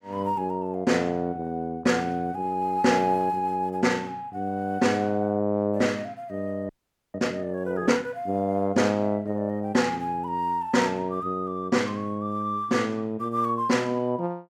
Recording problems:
frozen audio; at 6.5 s

